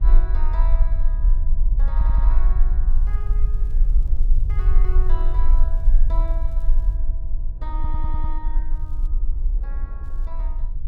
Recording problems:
low-frequency rumble; below 40 Hz, strongest tone 22 Hz, SNR -16 dB
wind noise; below 410 Hz, SNR 13 dB
audio stuttering; at 2 s and at 8 s
crackling; from 3 to 7 s, at 9 s and at 10 s; loose cable, SNR 25 dB

